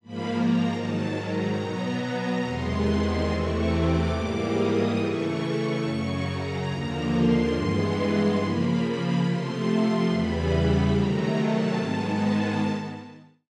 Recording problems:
none

